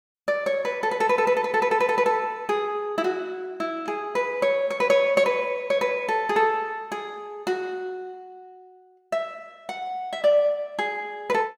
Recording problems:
none

